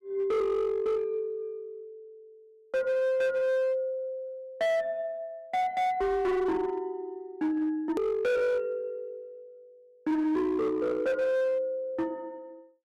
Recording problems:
distortion; hard clipping, uneven, signal-to-distortion ratio 10 dB
click at an edit; at 8 s

